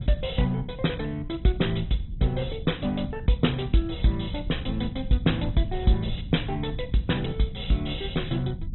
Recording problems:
low-pass filter; nothing above 3.9 kHz
lossy compression; MP2, log-spectral distance 6 dB
rumble; below 120 Hz, SNR 9 dB

